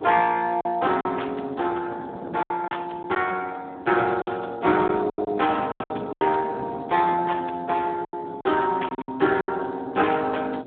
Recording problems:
telephone audio; 260 Hz to 3.5 kHz, Speex
wind on the microphone; below 490 Hz, SNR 18 dB
packet loss; 8% of the sound replaced, filled with silence

